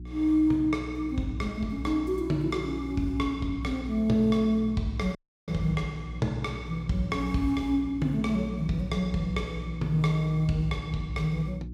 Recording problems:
mains hum; 60 Hz, harmonics up to 360 Hz, SNR 12 dB
dropout; at 5 s

